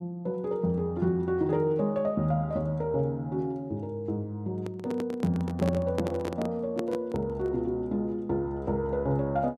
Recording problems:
handling noise; from 4.5 to 7.5 s; peak +2 dB vs average level

